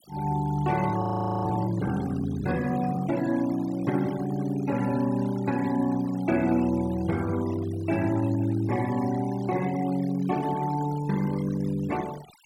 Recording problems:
denoising artefacts; signal-to-artefact ratio 17 dB
frozen audio; at 1 s

